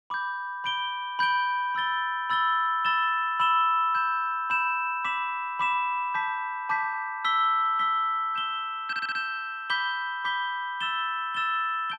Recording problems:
audio stuttering; at 9 s

